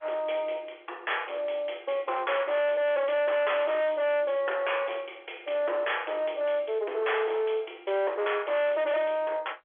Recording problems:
telephone audio; 320 Hz to 3.4 kHz, G.711
distortion; hard clipping, signal-to-distortion ratio 7 dB

